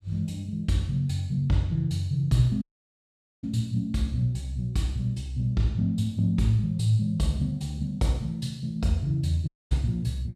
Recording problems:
dropout; at 2.5 s for 1 s and at 9.5 s

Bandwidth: 14.5 kHz